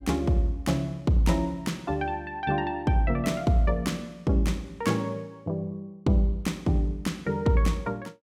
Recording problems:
none

